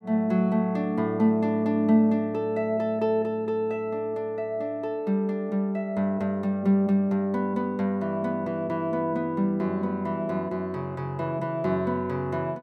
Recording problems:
none

